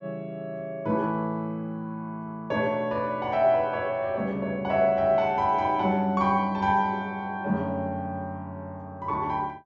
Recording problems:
low-pass filter; nothing above 8 kHz

